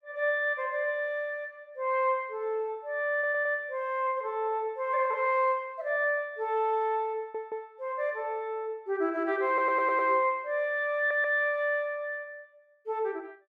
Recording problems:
audio stuttering; 4 times, first at 3 s

